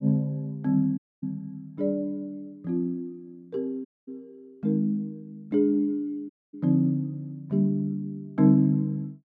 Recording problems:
dropout; at 1 s, at 4 s and at 6.5 s

